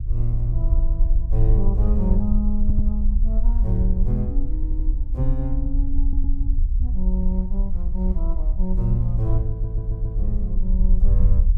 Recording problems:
rumble; below 50 Hz, SNR -4 dB
stutter; 4 times, first at 2.5 s

